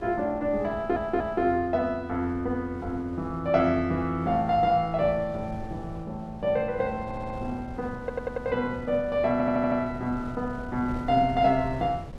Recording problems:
wind noise; below 290 Hz, SNR 15 dB
stutter; 4 times, first at 0.5 s

